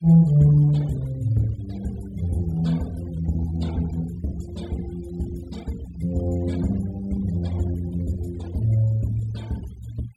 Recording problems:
noise reduction artefacts; signal-to-artefact ratio 22 dB

